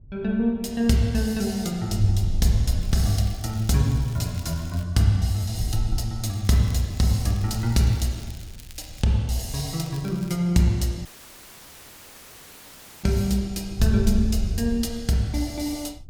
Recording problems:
wind noise; below 82 Hz, SNR 8 dB
crackle; from 3 to 5 s, from 6.5 to 9 s and at 9.5 s; loose cable, SNR 23 dB
dropout; at 11 s for 2 s

